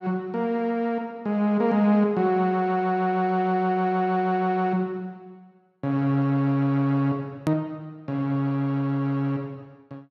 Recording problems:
hard cut with a click; at 7.5 s

